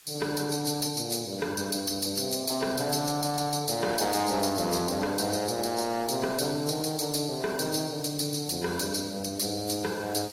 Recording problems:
codec artefacts; AAC, log-spectral distance 8 dB, nothing above 14.3 kHz
distorted audio; soft clipping, signal-to-distortion ratio 11 dB
hiss; slope +1 dB per octave, SNR 21 dB

